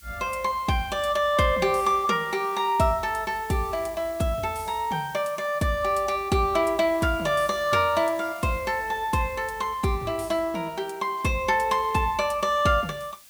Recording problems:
background hiss; slope +2 dB per octave, SNR 22 dB

